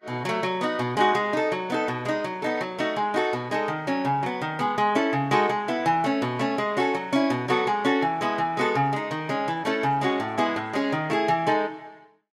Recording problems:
lossy compression; Vorbis, log-spectral distance 2 dB, nothing above 12.7 kHz

